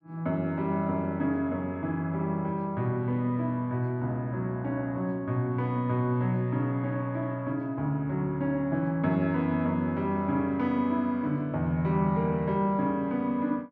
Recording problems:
none

